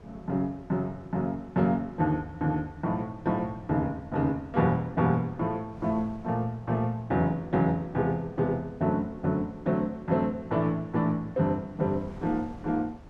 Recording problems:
wind on the microphone; below 360 Hz, SNR 21 dB

